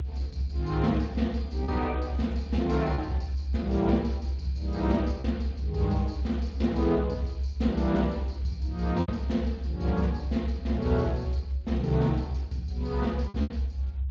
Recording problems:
codec artefacts; Speex, log-spectral distance 2 dB, nothing above 17.7 kHz
rumble; below 70 Hz, strongest tone 68 Hz, SNR 3 dB
packet loss; 3% of the sound replaced, filled with repeated pitch periods

